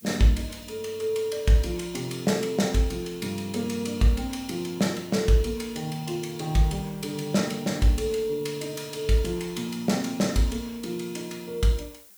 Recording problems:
background hiss; slope +2 dB per octave, SNR 22 dB

